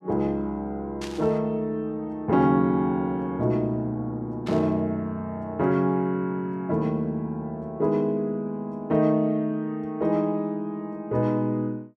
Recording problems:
static burst; at 1 s and at 4.5 s; peak -8 dB vs average level

